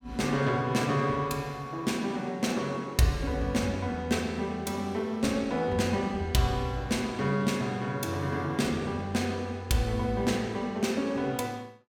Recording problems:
none

